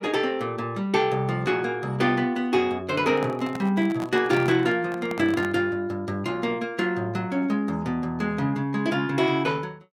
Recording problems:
microphone handling noise; from 3 to 5.5 s; peak -5 dB vs average level

